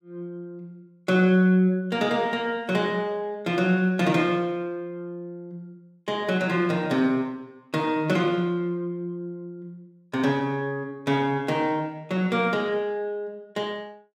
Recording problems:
none

